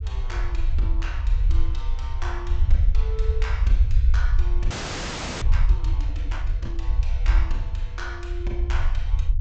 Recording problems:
treble cut off; nothing above 8 kHz
low-frequency rumble; below 62 Hz, SNR -12 dB
audio freezing; at 4.5 s for 0.5 s

